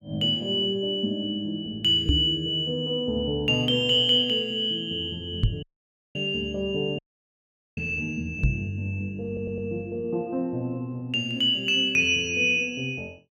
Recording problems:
microphone bump; at 2 s, at 5.5 s and at 8.5 s; peak +6 dB vs average level
audio cutting out; at 5.5 s for 0.5 s and at 7 s for 1 s
stutter; at 9.5 s

